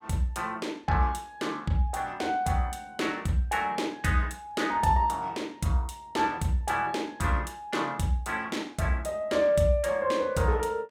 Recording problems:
none

